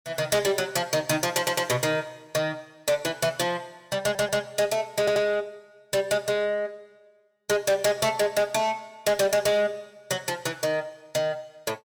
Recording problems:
distortion; hard clipping, signal-to-distortion ratio 12 dB
stutter; at 1.5 s, at 4 s and at 5 s

